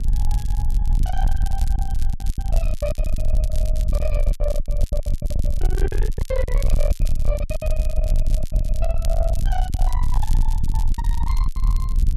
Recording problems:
distorted audio; soft clipping, signal-to-distortion ratio 8 dB
hum; 60 Hz, harmonics up to 660 Hz, SNR 9 dB
low-frequency rumble; below 52 Hz, strongest tone 22 Hz, SNR -8 dB
crackling; vinyl, SNR 12 dB
packet loss; 15% of the sound replaced, filled with silence

